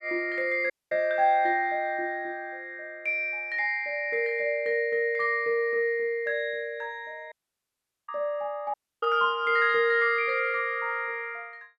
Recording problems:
audio cutting out; at 0.5 s, at 7.5 s for 1 s and at 8.5 s

